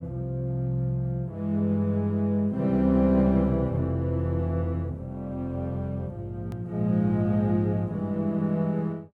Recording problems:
click at an edit; at 6.5 s

